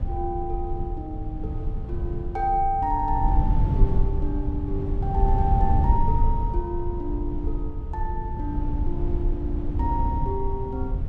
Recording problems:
rumble; below 84 Hz, SNR -2 dB

